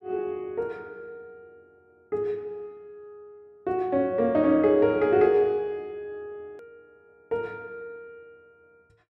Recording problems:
click at an edit; at 6.5 s

